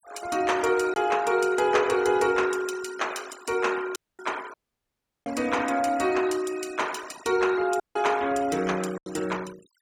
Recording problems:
noise reduction artefacts; signal-to-artefact ratio 17 dB
lost packets; 1.5% of the sound replaced, filled with silence
dropout; at 4 s, at 4.5 s for 0.5 s and at 8 s

